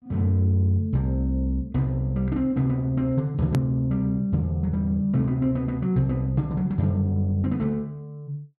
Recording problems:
edit click; at 3.5 s

